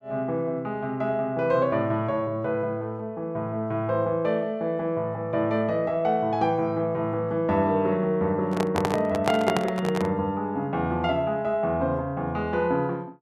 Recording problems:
handling noise; from 8.5 to 10 s; peak +4 dB vs average level

